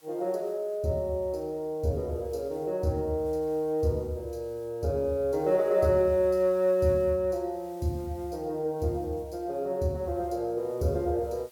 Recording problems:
background hiss; slope 0 dB per octave, SNR 29 dB

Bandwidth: 18 kHz